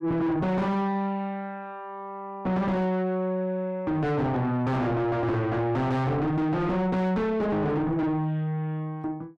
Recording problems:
distorted audio; soft clipping, signal-to-distortion ratio 5 dB

